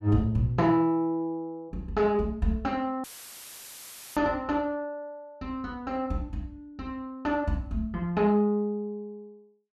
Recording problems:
audio cutting out; at 3 s for 1 s; filled with static

